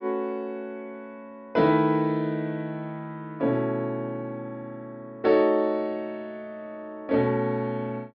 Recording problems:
low-pass filter; nothing above 5.5 kHz

